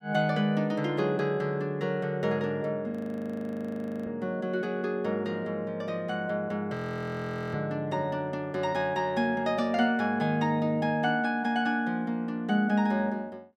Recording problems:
audio freezing; at 3 s for 1 s and at 6.5 s for 1 s

